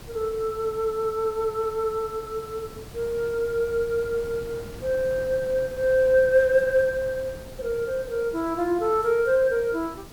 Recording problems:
background hiss; SNR 23 dB
wind noise; below 430 Hz, SNR 19 dB

